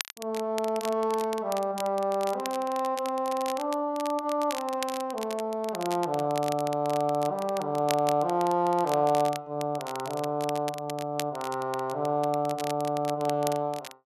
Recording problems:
crackle; vinyl, SNR 13 dB

